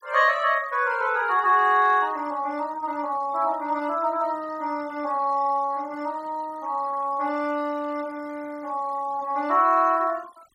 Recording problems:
noise reduction artefacts; signal-to-artefact ratio 25 dB

